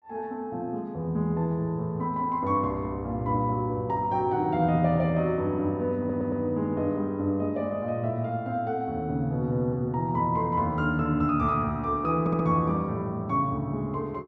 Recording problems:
stutter; at 6 s and at 12 s

